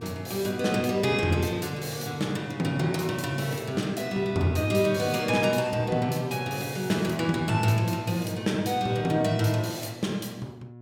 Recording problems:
electrical hum; 60 Hz, harmonics up to 720 Hz, SNR 17 dB

